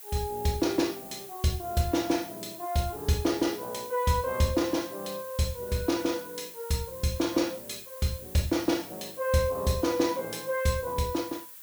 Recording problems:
hiss; SNR 13 dB

